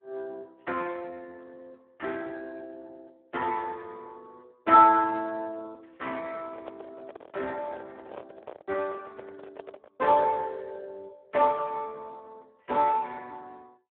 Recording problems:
phone line; 280 Hz to 2.4 kHz, Speex
microphone handling noise; from 6.5 to 10 s; peak -9 dB vs average level

